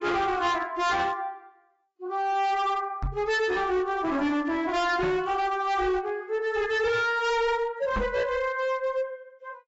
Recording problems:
lossy codec; AAC, log-spectral distance 2 dB, nothing above 7.6 kHz
distorted audio; hard clipping, signal-to-distortion ratio 7 dB
knock on the microphone; at 3 s, at 5 s and at 8 s; peak 0 dB vs average level

